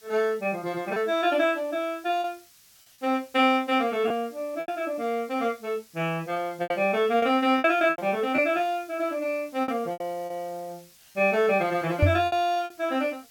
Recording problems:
hiss; SNR 26 dB
lost packets; 7% of the sound replaced, filled with repeated pitch periods
knock on the microphone; at 12 s; peak +7 dB vs average level

